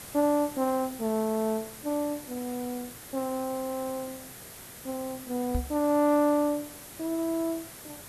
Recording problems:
background hiss; slope -3 dB per octave, SNR 13 dB
knock on the microphone; at 5.5 s; peak +2 dB vs average level

